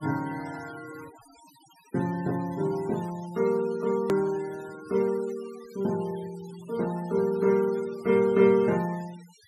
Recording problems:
noise reduction artefacts; signal-to-artefact ratio 21 dB
hard cut with a click; at 4 s

